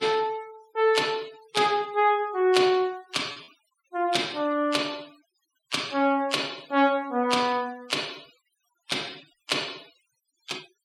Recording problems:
noise reduction artefacts; signal-to-artefact ratio 22 dB
packet loss; 1% of the sound replaced, filled with repeated pitch periods

